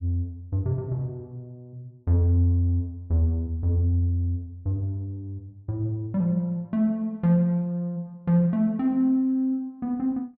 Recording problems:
none

